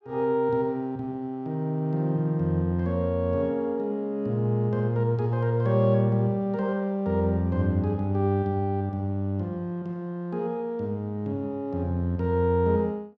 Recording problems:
none

